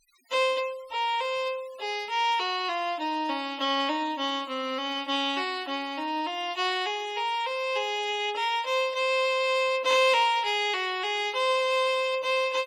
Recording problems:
denoising artefacts; signal-to-artefact ratio 22 dB

